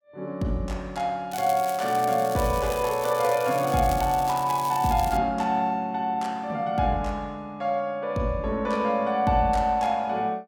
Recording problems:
crackle; from 1.5 to 5 s; loose cable, SNR 14 dB

